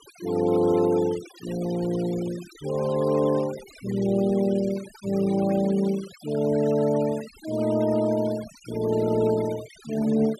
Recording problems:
noise reduction artefacts; signal-to-artefact ratio 18 dB

